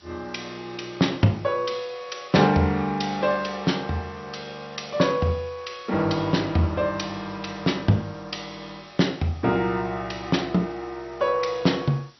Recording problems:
lossy compression; MP2, log-spectral distance 10 dB, nothing above 5.8 kHz
hiss; SNR 27 dB

